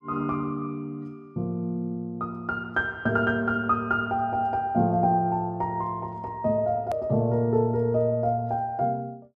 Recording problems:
hard cut with a click; at 7 s

